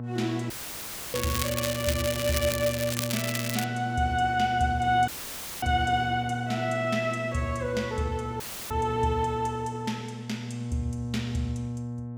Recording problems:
hum; 60 Hz, harmonics up to 840 Hz, SNR 6 dB
audio cutting out; at 0.5 s for 0.5 s, at 5 s for 0.5 s and at 8.5 s; filled with static
crackling; from 1 to 3.5 s; loose cable, SNR 3 dB

